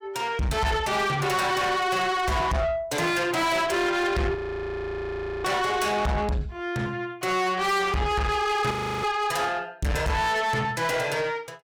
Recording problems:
distortion; soft clipping, signal-to-distortion ratio 8 dB
frozen audio; at 4.5 s for 1 s and at 8.5 s

